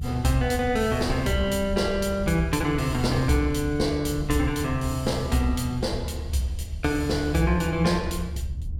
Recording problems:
rumble; below 80 Hz, SNR 9 dB

